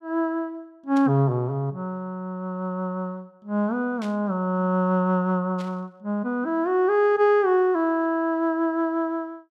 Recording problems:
static burst; at 1 s, at 4 s and at 5.5 s; peak -13 dB vs average level

